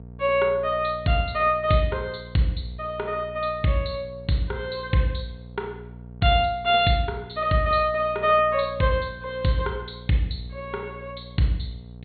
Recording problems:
treble cut off; nothing above 4.4 kHz
hum; 60 Hz, harmonics up to 720 Hz, SNR 18 dB

